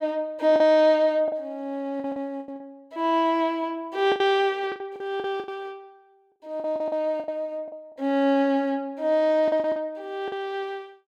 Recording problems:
packet loss; 10% of the sound replaced, filled with the last packet

